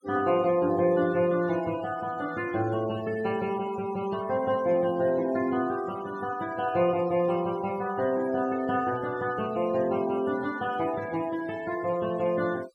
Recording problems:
noise reduction artefacts; signal-to-artefact ratio 20 dB

